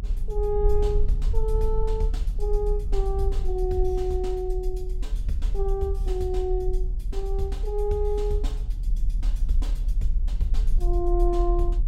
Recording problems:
rumble; below 44 Hz, strongest tone 36 Hz, SNR -1 dB

